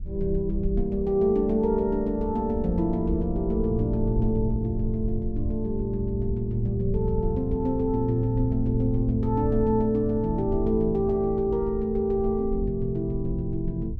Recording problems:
wind on the microphone; below 74 Hz, SNR 8 dB

